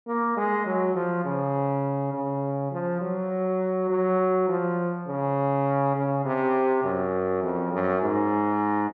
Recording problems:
none

